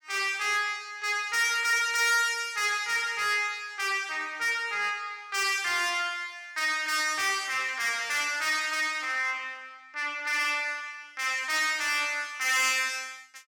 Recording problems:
distortion; soft clipping, signal-to-distortion ratio 10 dB

